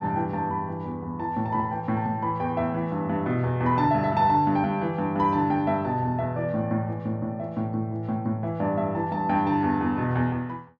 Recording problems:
none

